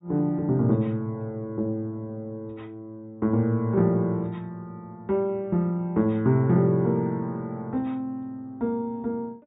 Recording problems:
treble missing; nothing above 4 kHz

